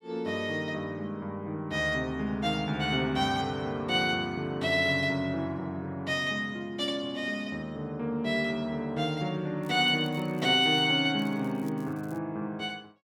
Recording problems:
crackling; from 9.5 to 11 s and at 11 s; loose cable, SNR 28 dB

